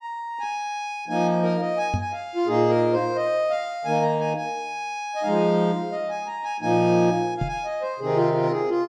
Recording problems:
microphone bump; at 2 s and at 7.5 s; peak +2 dB vs average level

